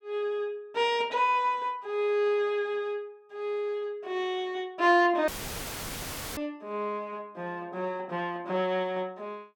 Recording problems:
dropout; at 5.5 s for 1 s; filled with static

